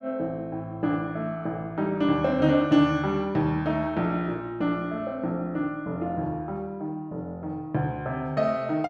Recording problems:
none

